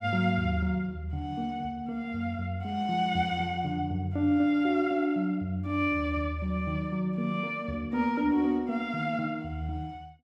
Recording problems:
none

